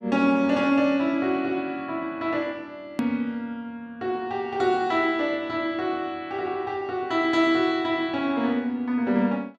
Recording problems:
click at an edit; at 3 s

